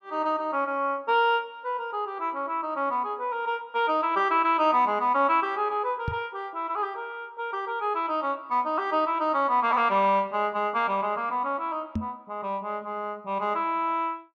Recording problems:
knock on the microphone; at 6 s and at 12 s; peak +1 dB vs average level

